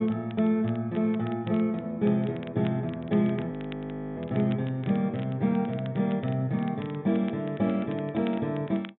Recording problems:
treble cut off; nothing above 3.8 kHz
crackling; vinyl, SNR 23 dB
frozen audio; at 3.5 s for 0.5 s

